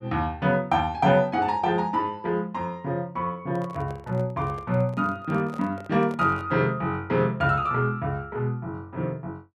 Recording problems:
handling noise; from 3.5 to 6.5 s; peak -10 dB vs average level

